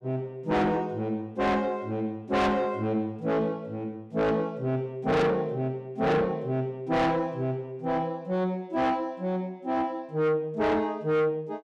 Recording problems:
distorted audio; soft clipping, signal-to-distortion ratio 6 dB

